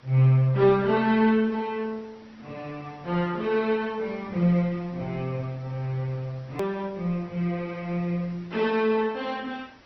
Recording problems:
treble cut off; nothing above 5.9 kHz
codec artefacts; Opus, log-spectral distance 4 dB
hiss; SNR 27 dB
click at an edit; at 6.5 s

